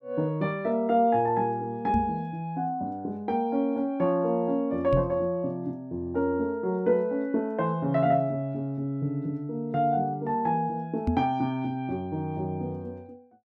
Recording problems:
knock on the microphone; at 2 s, at 5 s and at 11 s; peak +5 dB vs average level

